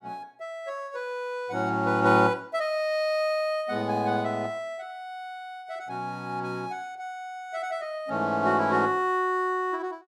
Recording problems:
none

